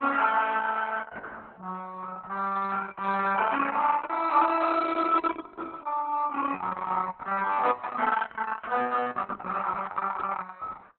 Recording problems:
lossy codec; Opus, log-spectral distance 4 dB, nothing above 4 kHz

